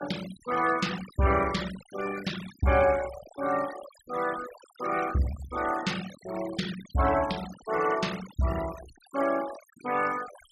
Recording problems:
noise reduction artefacts; signal-to-artefact ratio 13 dB

